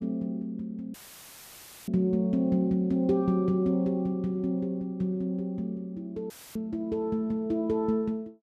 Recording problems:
audio cutting out; at 1 s for 1 s and at 6.5 s; filled with static

